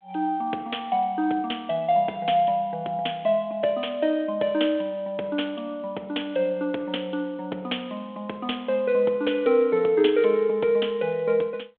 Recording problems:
phone line; 320 Hz to 3.4 kHz, G.726

